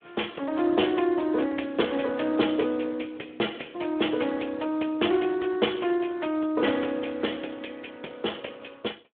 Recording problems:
phone line; 240 Hz to 3.5 kHz, Speex

